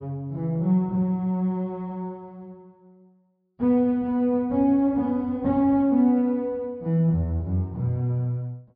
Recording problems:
treble cut off; nothing above 5 kHz

